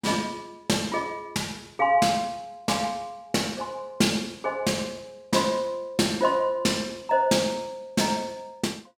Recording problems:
none

